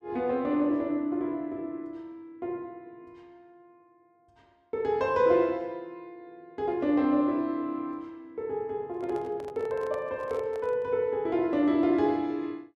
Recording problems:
microphone handling noise; from 9 to 11 s; peak -11 dB vs average level

